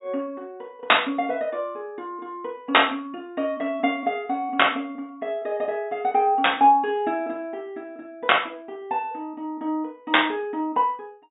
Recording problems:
low-pass filter; nothing above 4 kHz

